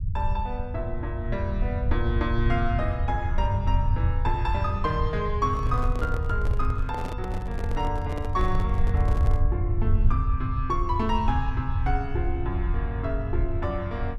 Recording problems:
low-frequency rumble; below 90 Hz, SNR -2 dB
handling noise; from 5.5 to 9.5 s; peak -3 dB vs average level

